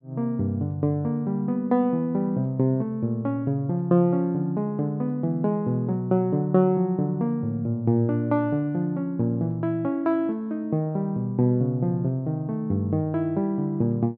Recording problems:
none

